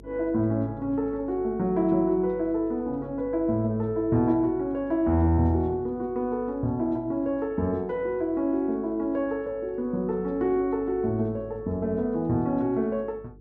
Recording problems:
hum; 50 Hz, harmonics up to 450 Hz, SNR 23 dB

